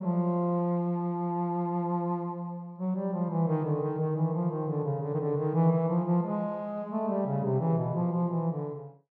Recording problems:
none

